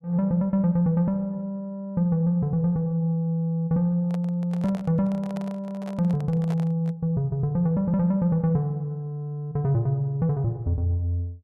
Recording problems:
handling noise; from 4 to 7 s; peak -10 dB vs average level

